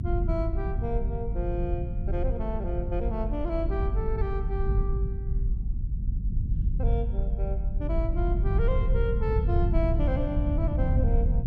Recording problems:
low-frequency rumble; below 90 Hz, SNR -5 dB

